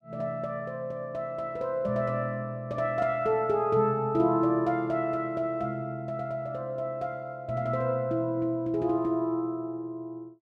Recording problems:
none

